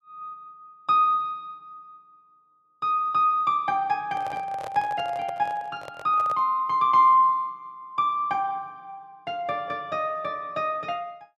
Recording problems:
microphone handling noise; from 4 to 6.5 s; peak -10 dB vs average level

